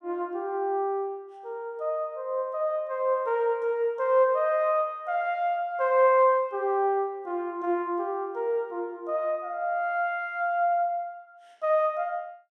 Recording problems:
none

